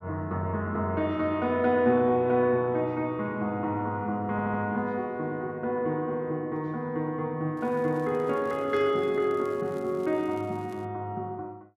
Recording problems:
stutter; at 4.5 s
crackle; from 7.5 to 11 s; loose cable, SNR 30 dB

